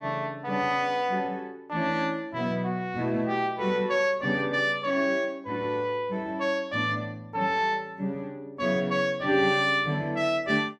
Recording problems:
none

